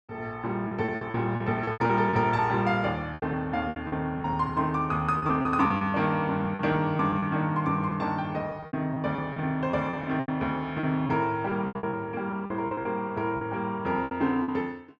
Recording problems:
lost packets; 12% of the sound replaced, filled with repeated pitch periods

